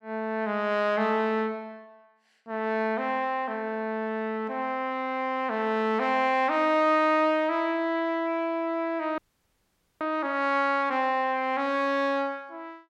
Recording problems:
audio freezing; at 9 s for 1 s

